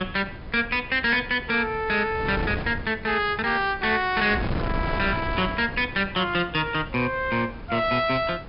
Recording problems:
treble missing; nothing above 5.5 kHz
distorted audio; soft clipping, signal-to-distortion ratio 12 dB
wind on the microphone; below 470 Hz, SNR 10 dB

